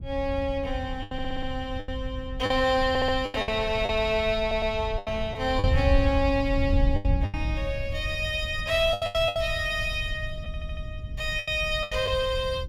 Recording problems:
wind on the microphone; below 90 Hz, SNR 6 dB
lost packets; 9% of the sound replaced, filled with the last packet
audio stuttering; 4 times, first at 1 s

